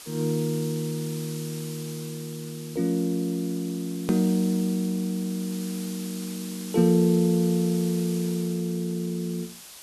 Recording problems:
hiss; slope +1 dB per octave, SNR 14 dB
click at an edit; at 4 s

